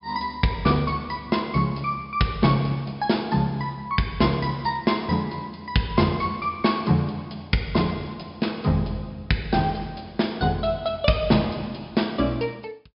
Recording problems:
treble missing; nothing above 5.5 kHz

